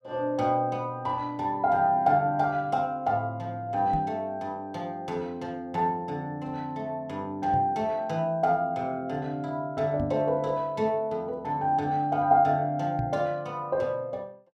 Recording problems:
knock on the microphone; 4 times, first at 4 s; peak -1 dB vs average level

